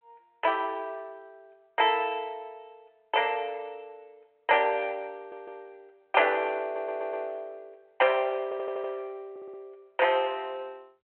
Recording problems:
telephone audio; 340 Hz to 3.2 kHz, G.726
stutter; 4 times, first at 5 s

